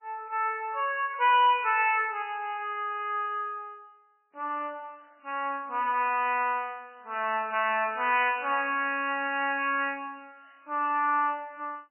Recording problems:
lossy compression; MP3, log-spectral distance 3 dB, nothing above 2.7 kHz

